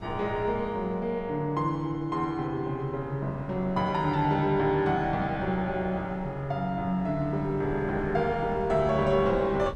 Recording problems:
wind on the microphone; below 250 Hz, SNR 18 dB

